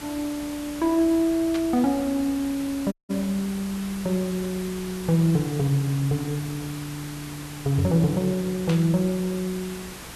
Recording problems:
electrical hum; 60 Hz, harmonics up to 480 Hz, SNR 26 dB
background hiss; slope -2 dB per octave, SNR 14 dB
static burst; at 1.5 s and at 8.5 s; peak -4 dB vs average level
audio cutting out; at 3 s

